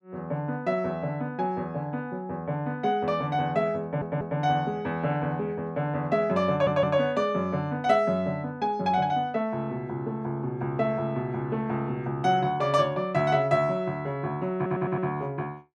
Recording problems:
audio stuttering; at 4 s, at 6.5 s and at 15 s

